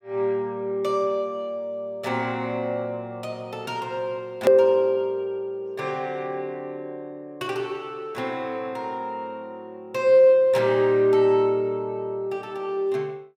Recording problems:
click at an edit; at 4.5 s

